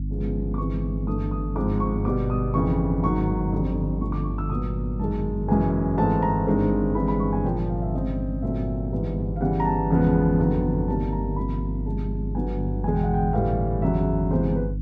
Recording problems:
hum; 50 Hz, harmonics up to 300 Hz, SNR 5 dB

